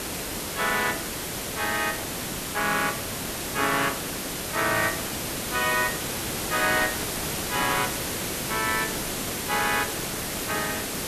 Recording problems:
hiss; slope -3 dB per octave, SNR 2 dB

